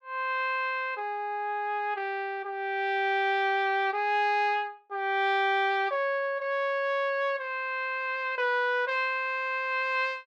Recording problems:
none

